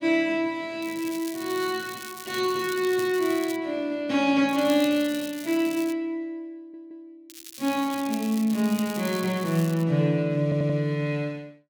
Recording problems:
crackling; from 1 to 3.5 s, from 4.5 to 6 s and from 7.5 to 10 s; loose cable, SNR 15 dB
stutter; at 6.5 s and at 10 s

